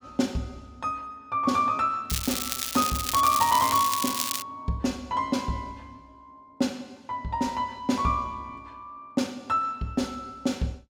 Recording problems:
crackling; from 2 to 4.5 s; loose cable, SNR 2 dB

